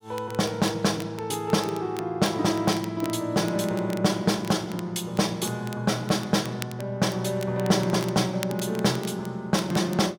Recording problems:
crackle; vinyl, SNR 18 dB

